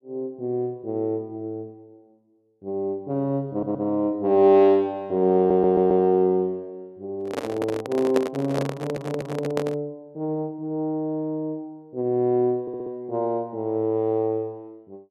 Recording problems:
audio stuttering; 4 times, first at 3.5 s
handling noise; from 7 to 10 s; peak +3 dB vs average level

